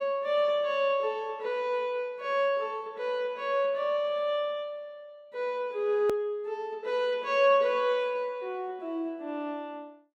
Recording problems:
edit click; at 6 s

